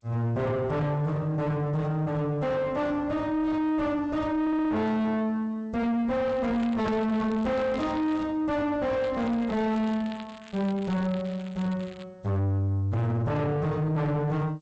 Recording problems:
codec artefacts; G.722, log-spectral distance 2 dB
distorted audio; soft clipping, signal-to-distortion ratio 7 dB
audio stuttering; at 4.5 s
crackling; from 6.5 to 8 s and from 9 to 12 s; loose cable, SNR 22 dB

